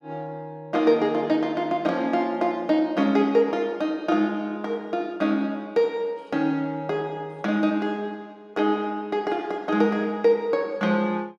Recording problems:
none

